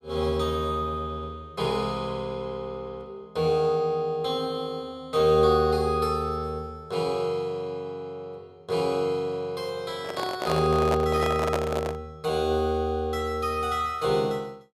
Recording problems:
handling noise; from 10 to 12 s; peak +2 dB vs average level

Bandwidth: 15.5 kHz